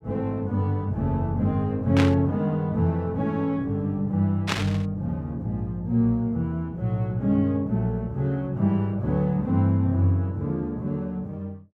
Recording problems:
burst of static; at 2 s and at 4.5 s; peak +3 dB vs average level

